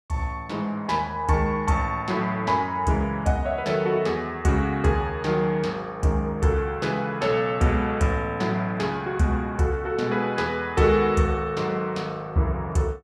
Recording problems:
none

